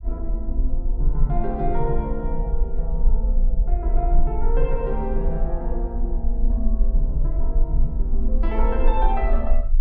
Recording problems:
low-frequency rumble; below 42 Hz, strongest tone 20 Hz, SNR -4 dB

